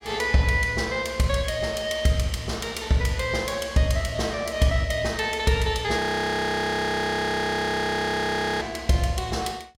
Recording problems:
audio freezing; at 6 s for 2.5 s

